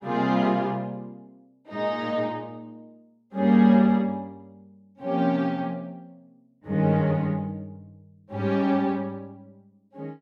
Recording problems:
none

